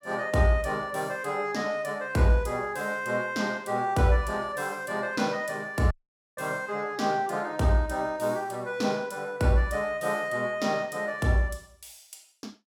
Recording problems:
audio cutting out; at 6 s

